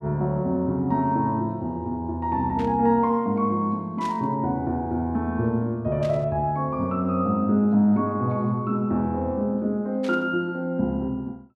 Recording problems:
static burst; 4 times, first at 2.5 s; peak -12 dB vs average level

